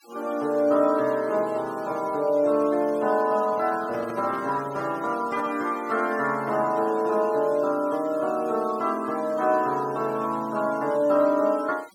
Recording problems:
denoising artefacts; signal-to-artefact ratio 23 dB
handling noise; from 3.5 to 5.5 s; peak -10 dB vs average level

